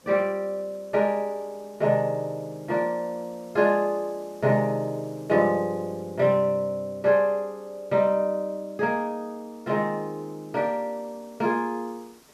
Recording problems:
background hiss; SNR 29 dB

